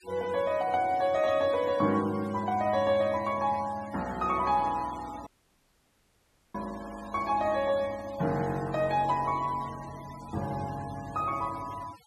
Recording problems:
noise reduction artefacts; signal-to-artefact ratio 19 dB
audio cutting out; at 5.5 s for 1.5 s

